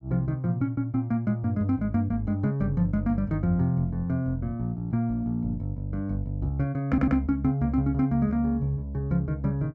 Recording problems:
stutter; at 7 s

